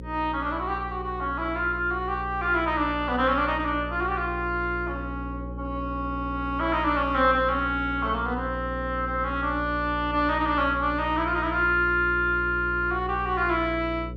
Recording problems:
hum; 60 Hz, harmonics up to 540 Hz, SNR 11 dB

